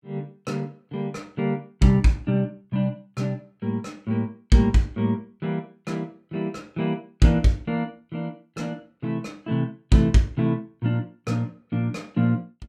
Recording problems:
none

